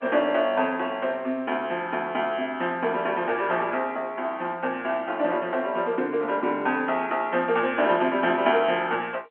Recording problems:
telephone audio; 260 Hz to 3.2 kHz, G.711

